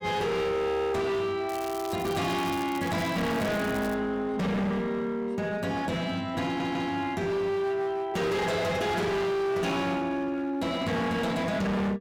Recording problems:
distorted audio; hard clipping, signal-to-distortion ratio 7 dB
crackling; from 1.5 to 4 s; loose cable, SNR 15 dB
audio stuttering; at 6.5 s

